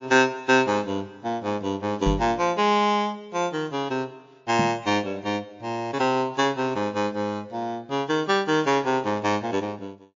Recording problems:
codec artefacts; MP3, log-spectral distance 2 dB, nothing above 6.5 kHz
microphone bump; at 2 s and at 4.5 s; peak +3 dB vs average level

